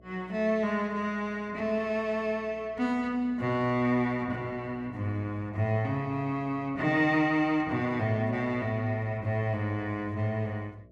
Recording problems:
hum; 60 Hz, harmonics up to 660 Hz, SNR 26 dB

